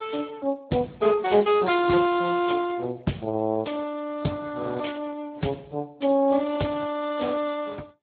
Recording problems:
lossy codec; AAC, then Speex, log-spectral distance 4 dB, nothing above 3.9 kHz

